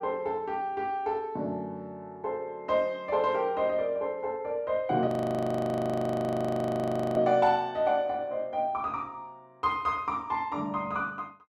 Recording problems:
audio freezing; at 5 s for 2 s

